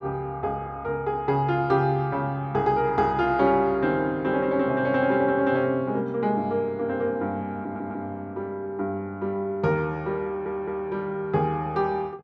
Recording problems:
audio stuttering; at 7.5 s and at 10 s

